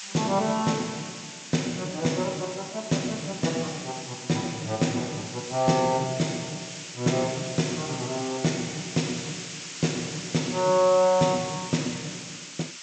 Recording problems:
treble cut off; nothing above 8 kHz
hiss; SNR 10 dB

